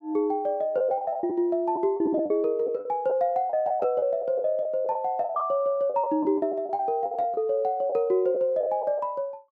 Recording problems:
lost packets; 11% of the sound replaced, filled with the last packet

